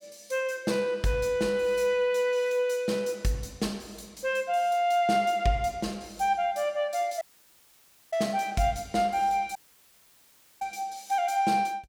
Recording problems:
dropout; at 7 s for 1 s and at 9.5 s for 1 s

